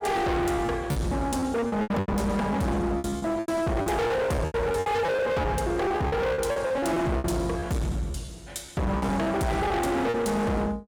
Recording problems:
distorted audio; hard clipping, signal-to-distortion ratio 6 dB
packet loss; 13% of the sound replaced, filled with repeated pitch periods

